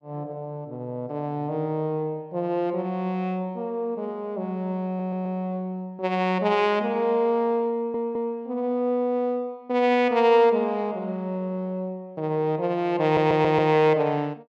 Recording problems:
stutter; at 5 s, at 7.5 s and at 13 s

